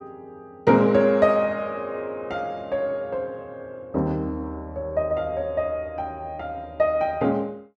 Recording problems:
none

